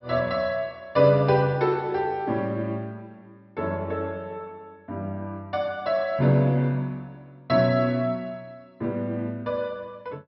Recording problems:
treble missing; nothing above 5.6 kHz

